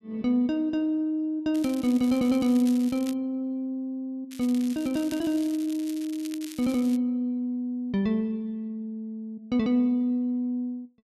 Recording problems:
crackling; from 1.5 to 3 s and from 4.5 to 7 s; loose cable, SNR 18 dB

